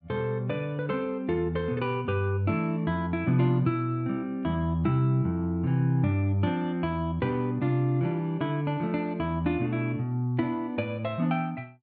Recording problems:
treble missing; nothing above 4.5 kHz

